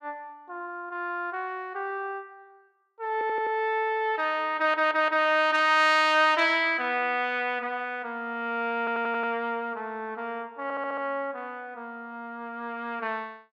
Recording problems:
audio stuttering; 4 times, first at 3 s

